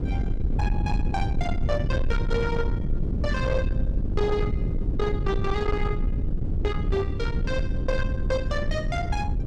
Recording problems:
distortion; soft clipping, signal-to-distortion ratio 11 dB
rumble; below 120 Hz, SNR -2 dB

